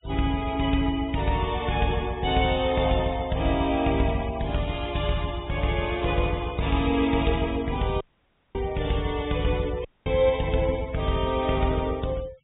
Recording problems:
treble missing; nothing above 4 kHz
noise reduction artefacts; signal-to-artefact ratio 21 dB
audio cutting out; at 8 s for 0.5 s and at 10 s

